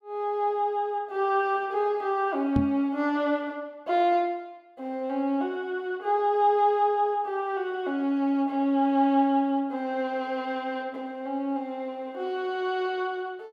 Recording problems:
knock on the microphone; at 2.5 s; peak +5 dB vs average level

